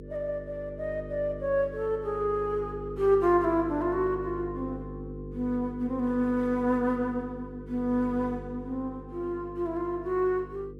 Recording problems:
electrical hum; 50 Hz, harmonics up to 500 Hz, SNR 12 dB

